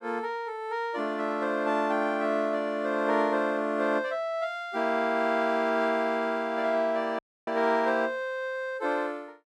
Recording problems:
dropout; at 7 s

